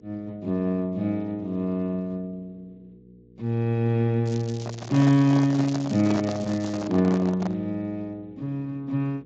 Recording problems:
codec artefacts; Speex, log-spectral distance 3 dB, nothing above 16.5 kHz
electrical hum; 60 Hz, harmonics up to 480 Hz, SNR 27 dB
crackle; from 4.5 to 7 s; loose cable, SNR 18 dB
microphone handling noise; from 4.5 to 7.5 s; peak -2 dB vs average level

